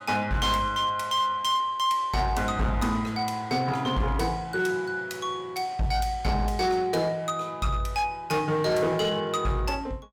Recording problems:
distorted audio; hard clipping, uneven, signal-to-distortion ratio 12 dB

